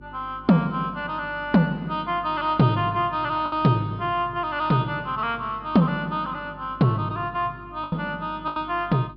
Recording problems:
low-pass filter; nothing above 5.5 kHz
electrical hum; 50 Hz, harmonics up to 400 Hz, SNR 22 dB
packet loss; 2% of the sound replaced, filled with the last packet

